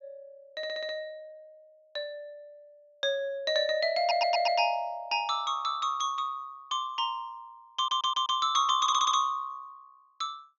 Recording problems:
treble cut off; nothing above 7 kHz
audio stuttering; 4 times, first at 0.5 s

